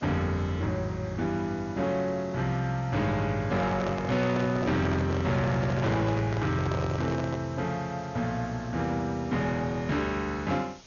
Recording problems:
treble cut off; nothing above 6.8 kHz
distortion; hard clipping, signal-to-distortion ratio 12 dB
hiss; slope -1 dB per octave, SNR 23 dB
handling noise; from 3.5 to 7.5 s; peak 0 dB vs average level

